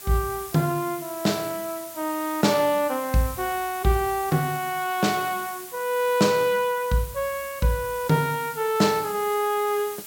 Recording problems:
hiss; slope 0 dB per octave, SNR 13 dB

